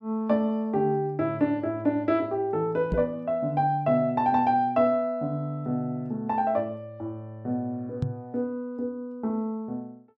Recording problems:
microphone bump; at 3 s and at 8 s; peak +3 dB vs average level

